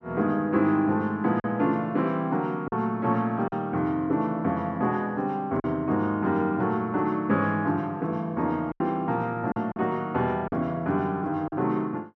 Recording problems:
lost packets; 3% of the sound replaced, filled with silence

